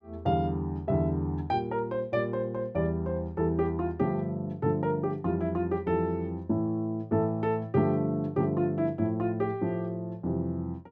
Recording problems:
none

